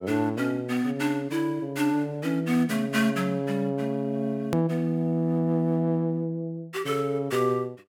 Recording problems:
click at an edit; at 4.5 s

